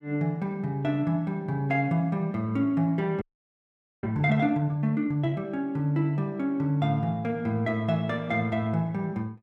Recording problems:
audio freezing; at 3 s for 1 s

